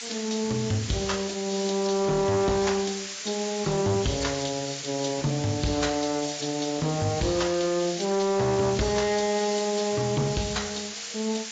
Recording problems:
lossy codec; AAC, log-spectral distance 17 dB, nothing above 7.3 kHz
distorted audio; soft clipping, signal-to-distortion ratio 11 dB
background hiss; SNR 8 dB

